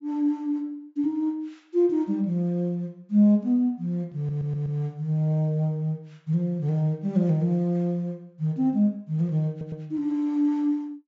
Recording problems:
treble cut off; nothing above 7.5 kHz
stutter; at 4 s and at 9.5 s

